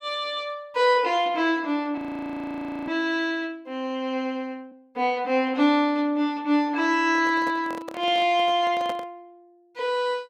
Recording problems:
frozen audio; at 2 s for 1 s
handling noise; from 7 to 9 s; peak -6 dB vs average level

